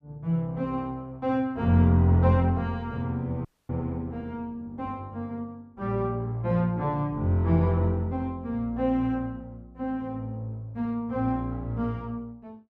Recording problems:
audio cutting out; at 3.5 s

